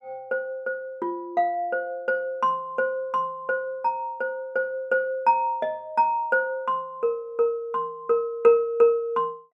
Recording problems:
none

